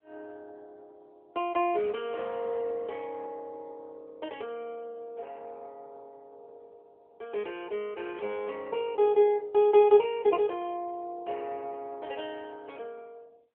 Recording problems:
phone line; 320 Hz to 3.7 kHz, AMR-NB

